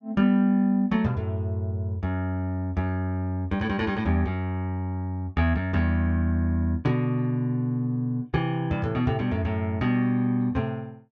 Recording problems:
none

